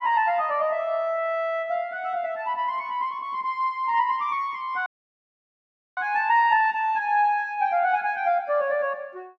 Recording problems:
dropout; at 5 s for 1 s

